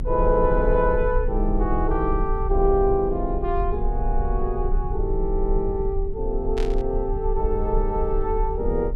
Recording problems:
low-frequency rumble; below 46 Hz, strongest tone 30 Hz, SNR 4 dB
static burst; at 6.5 s; peak -9 dB vs average level

